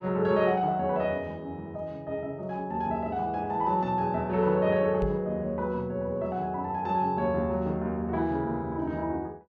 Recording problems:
knock on the microphone; at 5 s; peak -1 dB vs average level

